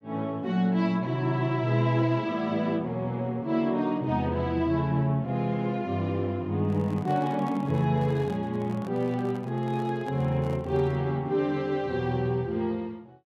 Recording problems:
handling noise; from 6.5 to 11 s; peak -10 dB vs average level

